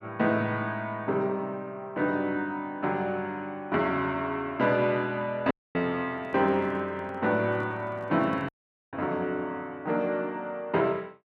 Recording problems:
dropout; at 5.5 s and at 8.5 s
handling noise; from 6 to 9 s; peak -9 dB vs average level

